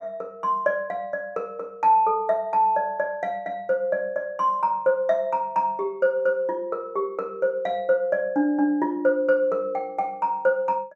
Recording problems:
none

